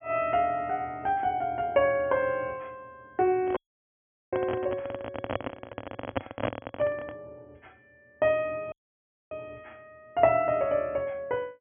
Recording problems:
low-pass filter; nothing above 3.3 kHz
handling noise; from 3.5 to 7 s; peak +3 dB vs average level
dropout; at 3.5 s for 1 s and at 8.5 s for 0.5 s

